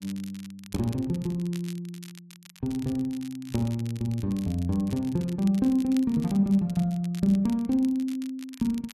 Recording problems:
crackle; vinyl, SNR 21 dB

